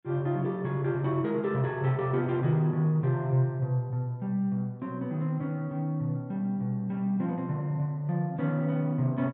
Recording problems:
treble cut off; nothing above 4 kHz

